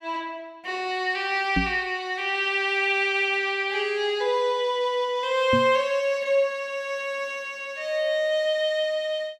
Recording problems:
microphone bump; at 1.5 s and at 5.5 s; peak +3 dB vs average level

